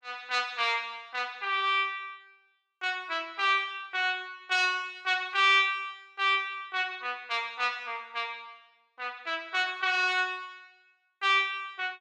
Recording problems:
none

